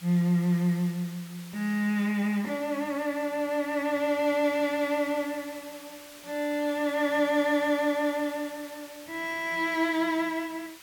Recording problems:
hiss; slope 0 dB per octave, SNR 19 dB

